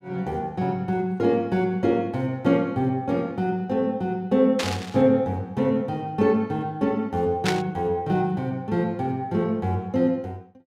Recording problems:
static burst; at 4.5 s and at 7.5 s; peak +2 dB vs average level

